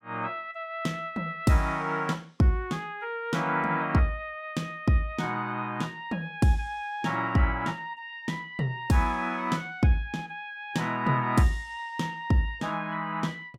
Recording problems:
none

